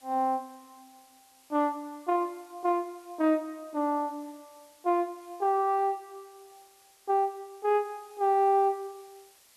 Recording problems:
hiss; slope +1 dB per octave, SNR 28 dB

